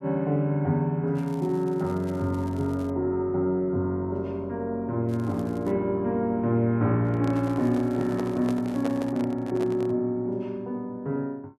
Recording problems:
crackle; from 1 to 3 s, at 5 s and from 7.5 to 9 s; loose cable, SNR 28 dB
microphone handling noise; from 7 to 10 s; peak -4 dB vs average level

